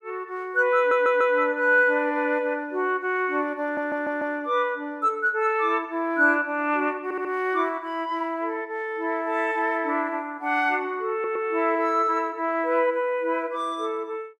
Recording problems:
stutter; 4 times, first at 1 s

